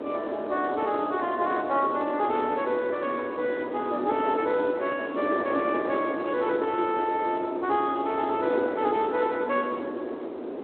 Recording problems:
phone line; 280 Hz to 3.9 kHz, Speex
wind on the microphone; below 580 Hz, SNR 6 dB

